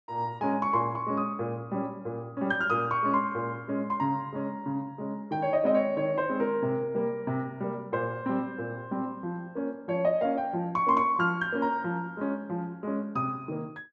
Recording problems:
none

